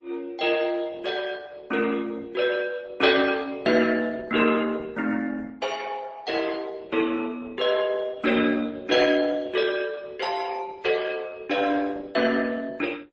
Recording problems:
codec artefacts; Opus, then MP3, log-spectral distance 4 dB

